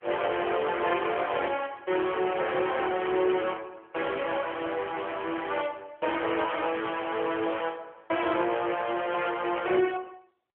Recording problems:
telephone audio; 300 Hz to 3.3 kHz, AMR-NB

